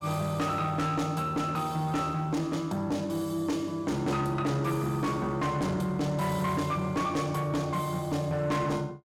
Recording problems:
distorted audio; soft clipping, signal-to-distortion ratio 10 dB

